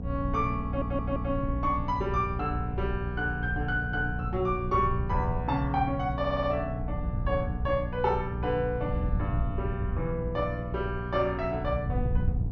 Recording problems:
treble cut off; nothing above 6.4 kHz
hum; 60 Hz, harmonics up to 780 Hz, SNR 5 dB
wind noise; below 110 Hz, SNR 6 dB
stutter; at 0.5 s and at 6 s

